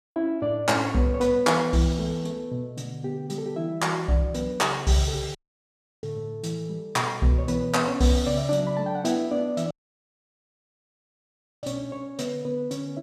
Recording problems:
dropout; at 5.5 s for 0.5 s and at 9.5 s for 2 s

